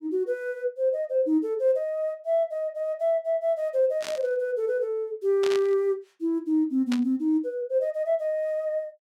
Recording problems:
static burst; at 4 s, at 5.5 s and at 7 s; peak -4 dB vs average level

